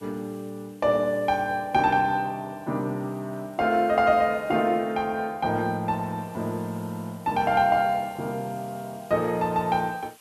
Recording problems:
background hiss; SNR 27 dB

